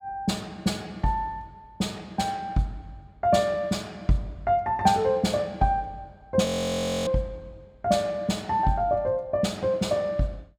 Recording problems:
frozen audio; at 6.5 s for 0.5 s

